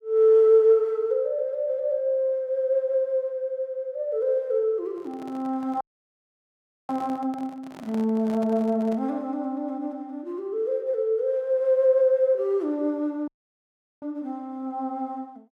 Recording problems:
microphone handling noise; from 5 to 9 s; peak -12 dB vs average level
dropout; at 6 s for 1 s and at 13 s for 0.5 s

